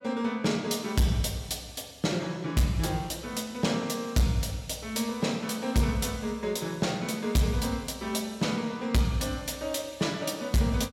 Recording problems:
distortion; hard clipping, signal-to-distortion ratio 11 dB

